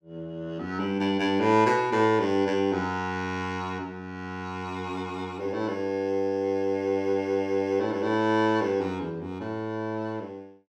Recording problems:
none

